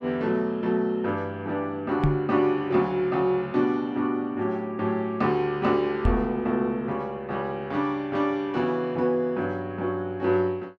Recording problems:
microphone thump; at 2 s and at 6 s; peak +6 dB vs average level

